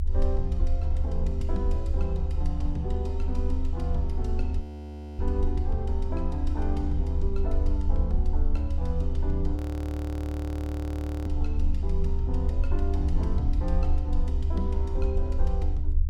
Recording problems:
low-frequency rumble; below 72 Hz, strongest tone 22 Hz, SNR -6 dB
frozen audio; at 4.5 s for 0.5 s and at 9.5 s for 1.5 s

